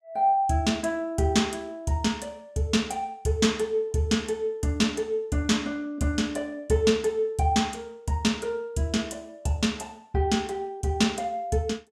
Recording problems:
none

